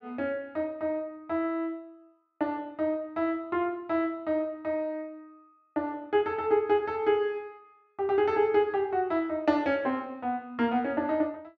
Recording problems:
none

